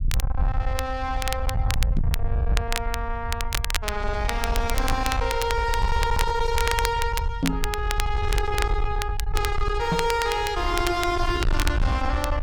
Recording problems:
distorted audio; soft clipping, signal-to-distortion ratio 7 dB
low-frequency rumble; below 72 Hz, SNR 2 dB
crackling; vinyl, SNR 7 dB
microphone thump; at 2 s, at 7.5 s and at 10 s; peak +6 dB vs average level

